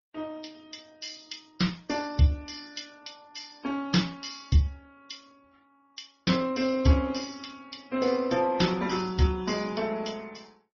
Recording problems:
lossy codec; MP3, then Opus, log-spectral distance 7 dB, nothing above 5.8 kHz

